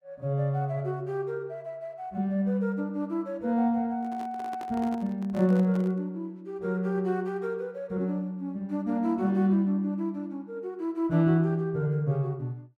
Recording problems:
handling noise; from 4 to 6 s; peak -10 dB vs average level

